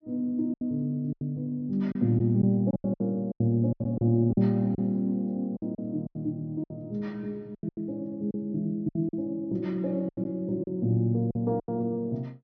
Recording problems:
treble missing; nothing above 6.3 kHz
lost packets; 11% of the sound replaced, filled with silence

